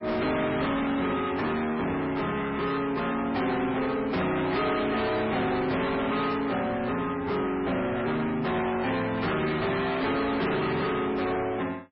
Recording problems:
lossy compression; MP3, log-spectral distance 4 dB, nothing above 4.5 kHz
distorted audio; soft clipping, signal-to-distortion ratio 6 dB

